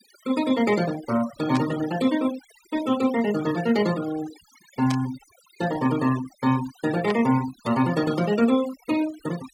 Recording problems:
denoising artefacts; signal-to-artefact ratio 15 dB
burst of static; at 1.5 s, at 5 s and at 7 s; peak -5 dB vs average level

